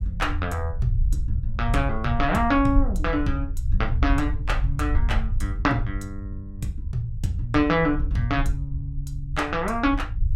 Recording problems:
rumble; below 68 Hz, SNR 4 dB

